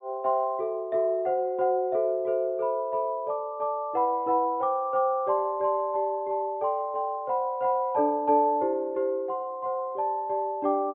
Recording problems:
treble cut off; nothing above 4 kHz

